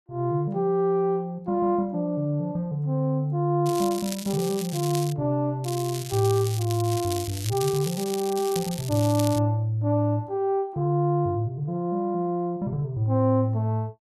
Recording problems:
crackle; from 3.5 to 5 s and from 5.5 to 9.5 s; loose cable, SNR 11 dB

